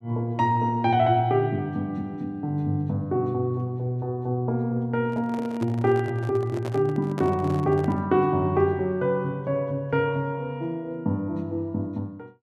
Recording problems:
microphone handling noise; from 5 to 8 s; peak -6 dB vs average level

